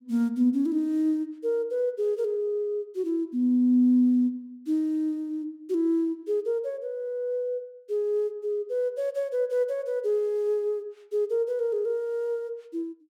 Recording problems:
none

